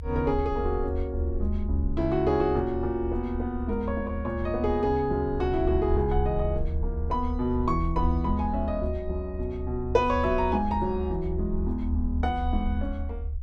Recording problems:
low-frequency rumble; below 74 Hz, strongest tone 72 Hz, SNR 4 dB

